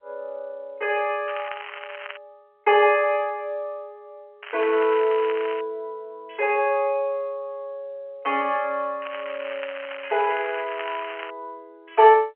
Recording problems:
phone line; 300 Hz to 3.3 kHz, G.711
crackle; at 1.5 s, from 4.5 to 5.5 s and from 9 to 11 s; loose cable, SNR 13 dB

